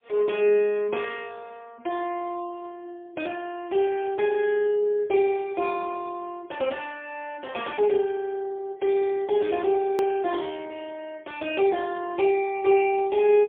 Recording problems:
phone line; 320 Hz to 3.3 kHz, AMR-NB, then MP3
edit click; at 10 s

